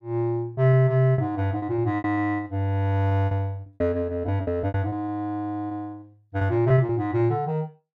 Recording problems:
packet loss; 13% of the sound replaced, filled with repeated pitch periods

